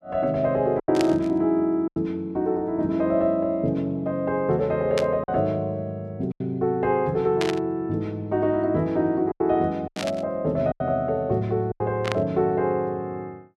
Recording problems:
lost packets; 4% of the sound replaced, filled with silence
static burst; 5 times, first at 1 s; peak 0 dB vs average level

